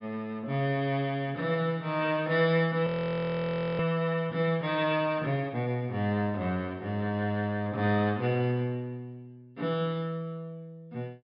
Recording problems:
low-pass filter; nothing above 5.5 kHz
frozen audio; at 3 s for 1 s

